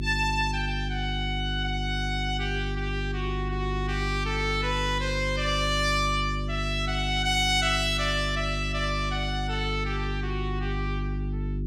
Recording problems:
hum; 50 Hz, harmonics up to 400 Hz, SNR 4 dB

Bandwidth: 16.5 kHz